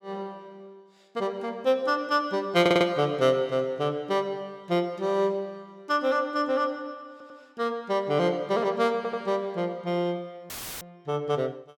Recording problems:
stutter; at 2.5 s, at 7 s and at 9 s
dropout; at 11 s; filled with static

